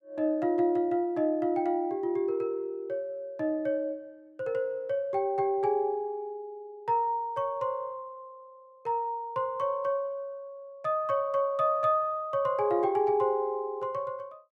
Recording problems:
none

